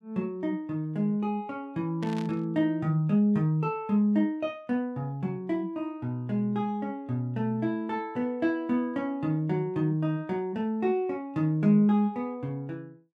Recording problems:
burst of static; at 2 s; peak -11 dB vs average level

